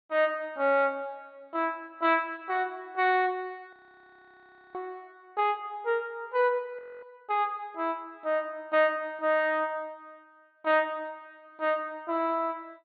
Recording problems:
treble missing; nothing above 4.5 kHz
frozen audio; at 3.5 s for 1 s and at 7 s

